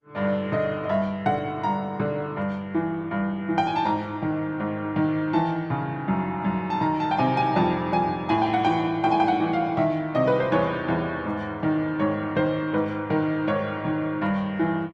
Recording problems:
lossy codec; Opus, log-spectral distance 2 dB

